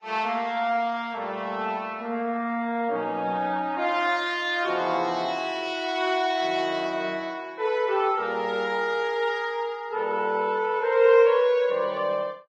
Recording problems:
lossy compression; Vorbis, log-spectral distance 2 dB

